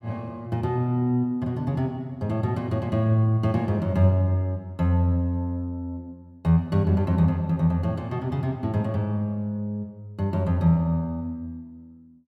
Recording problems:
none

